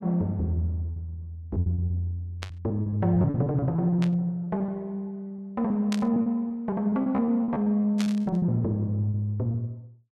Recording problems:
lost packets; 14% of the sound replaced, filled with repeated pitch periods
burst of static; 4 times, first at 2.5 s; peak -3 dB vs average level

